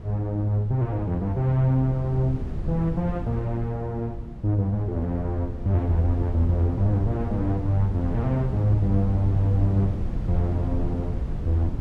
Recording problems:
wind on the microphone; below 140 Hz, SNR 7 dB

